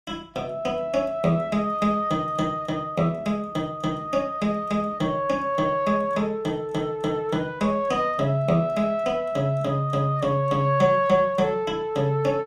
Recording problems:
none

